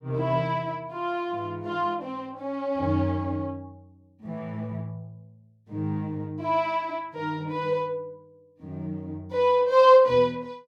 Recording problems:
none

